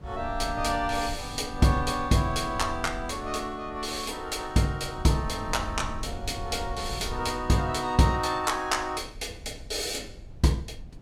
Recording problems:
wind noise; below 110 Hz, SNR 13 dB

